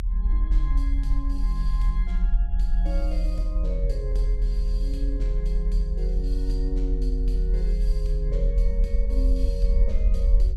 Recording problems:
low-frequency rumble; below 42 Hz, strongest tone 40 Hz, SNR -10 dB

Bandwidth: 15 kHz